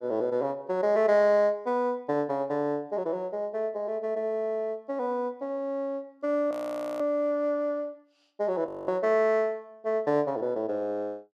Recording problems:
frozen audio; at 6.5 s and at 8.5 s

